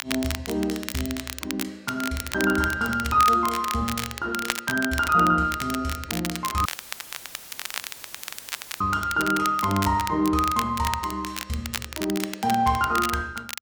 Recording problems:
crackle; vinyl, SNR 9 dB
dropout; at 6.5 s for 2 s; filled with static

